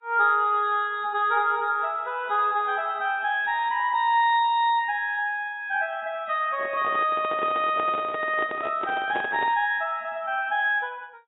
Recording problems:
codec artefacts; AAC, log-spectral distance 2 dB, nothing above 3.1 kHz
handling noise; from 6.5 to 9.5 s; peak -2 dB vs average level

